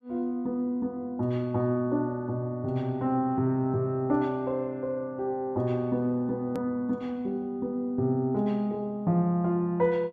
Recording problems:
hard cut with a click; at 6.5 s

